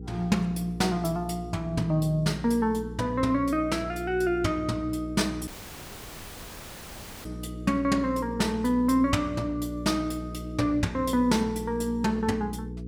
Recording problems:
mains hum; 60 Hz, harmonics up to 480 Hz, SNR 11 dB
dropout; at 5.5 s for 2 s

